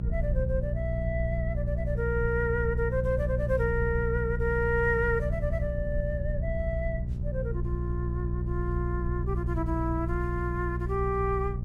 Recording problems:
electrical hum; 60 Hz, harmonics up to 420 Hz, SNR 1 dB
low-frequency rumble; below 78 Hz, strongest tone 36 Hz, SNR 6 dB

